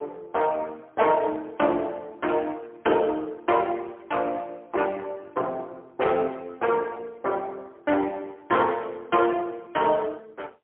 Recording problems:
telephone audio; 300 Hz to 3.4 kHz, AMR-NB, then MP3

